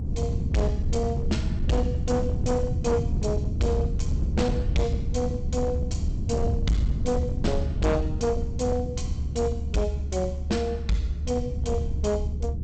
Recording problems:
lossy compression; G.722, log-spectral distance 2 dB, nothing above 7.8 kHz
distorted audio; hard clipping, signal-to-distortion ratio 12 dB
low-frequency rumble; below 130 Hz, SNR 0 dB

